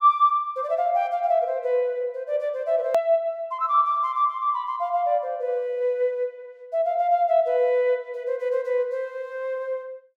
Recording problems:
hard cut with a click; at 3 s

